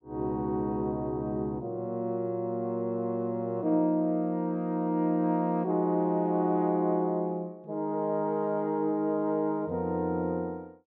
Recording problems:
treble missing; nothing above 7.4 kHz

